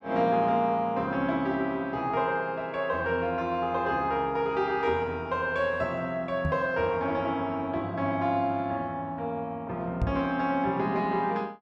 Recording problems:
microphone bump; at 6.5 s and at 10 s; peak +3 dB vs average level

